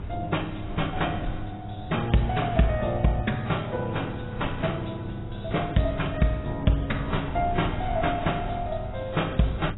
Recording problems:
lossy codec; AAC, log-spectral distance 5 dB, nothing above 3.8 kHz
hum; 50 Hz, harmonics up to 600 Hz, SNR 13 dB
wind noise; below 110 Hz, SNR 12 dB

